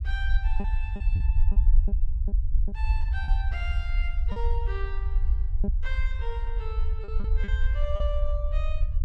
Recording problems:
rumble; below 56 Hz, SNR -10 dB
packet loss; 5% of the sound replaced, filled with repeated pitch periods

